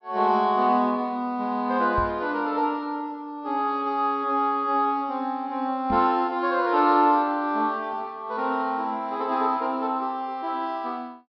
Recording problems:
treble missing; nothing above 5.5 kHz
microphone bump; at 2 s and at 6 s; peak -3 dB vs average level

